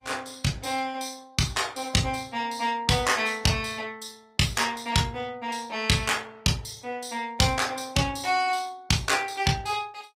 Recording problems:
lossy compression; Opus, log-spectral distance 4 dB, nothing above 15.5 kHz

